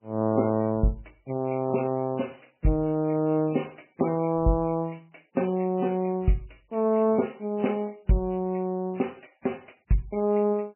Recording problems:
codec artefacts; MP3, log-spectral distance 4 dB, nothing above 2.7 kHz

